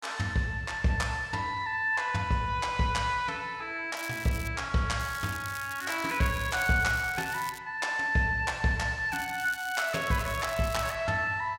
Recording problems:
crackling; at 4 s, from 5 to 7.5 s and from 9 to 11 s; loose cable, SNR 14 dB

